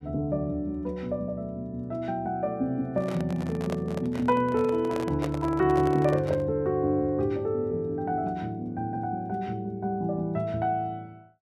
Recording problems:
handling noise; from 3 to 6.5 s; peak -1 dB vs average level

